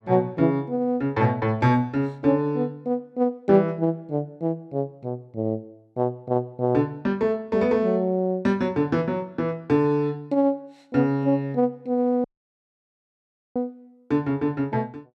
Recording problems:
dropout; at 12 s for 1.5 s

